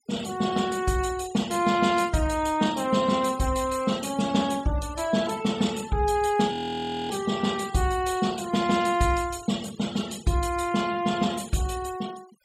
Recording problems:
noise reduction artefacts; signal-to-artefact ratio 17 dB
frozen audio; at 6.5 s for 0.5 s

